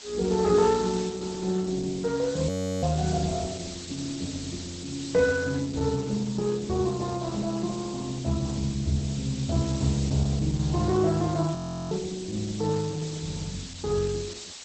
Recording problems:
lossy compression; Opus, log-spectral distance 13 dB, nothing above 13.1 kHz
hiss; SNR 11 dB
frozen audio; at 2.5 s and at 12 s

